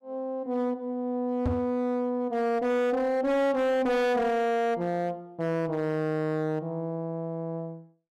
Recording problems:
distortion; hard clipping, signal-to-distortion ratio 7 dB
knock on the microphone; at 1.5 s; peak +2 dB vs average level

